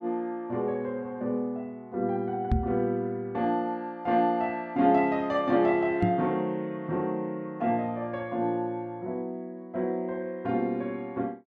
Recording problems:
microphone thump; at 2.5 s and at 6 s; peak +6 dB vs average level

